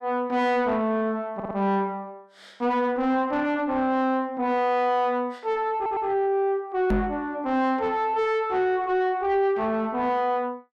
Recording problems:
distorted audio; soft clipping, signal-to-distortion ratio 10 dB
stutter; at 1.5 s and at 6 s
microphone thump; at 7 s; peak +3 dB vs average level

